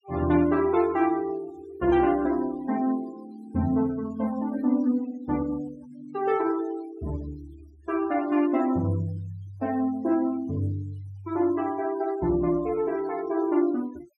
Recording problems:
denoising artefacts; signal-to-artefact ratio 21 dB

